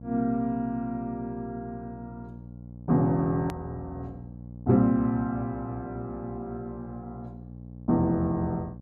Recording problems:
electrical hum; 60 Hz, harmonics up to 600 Hz, SNR 15 dB
edit click; at 3.5 s

